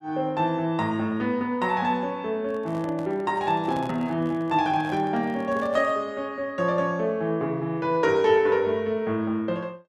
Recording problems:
handling noise; from 2.5 to 6 s; peak -9 dB vs average level

